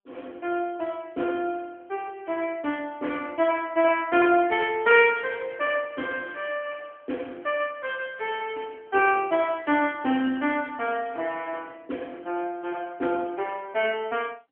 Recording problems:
phone line; 220 Hz to 3.2 kHz, AMR-NB

